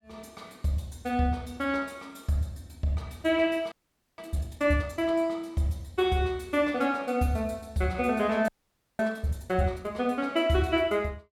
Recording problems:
audio freezing; at 3.5 s and at 8.5 s for 0.5 s

